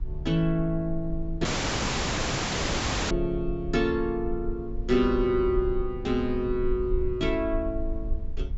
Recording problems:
treble cut off; nothing above 7.6 kHz
rumble; below 54 Hz, strongest tone 20 Hz, SNR 8 dB
audio cutting out; at 1.5 s for 1.5 s

